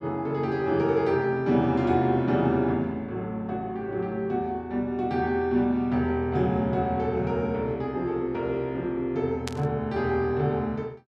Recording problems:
static burst; at 9.5 s; peak -4 dB vs average level

